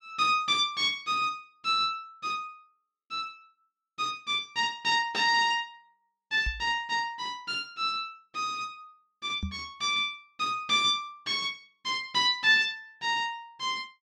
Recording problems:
microphone thump; at 6.5 s and at 9.5 s; peak -2 dB vs average level

